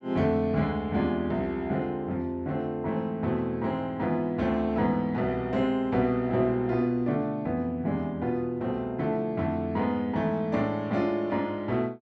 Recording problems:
none

